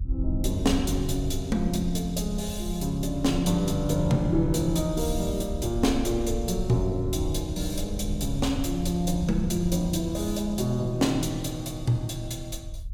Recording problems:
rumble; below 76 Hz, SNR 8 dB

